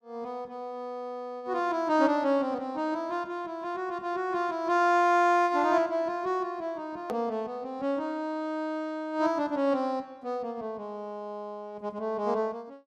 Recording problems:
click at an edit; at 7 s

